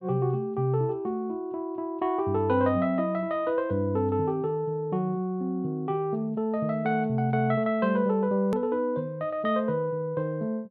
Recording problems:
click at an edit; at 8.5 s

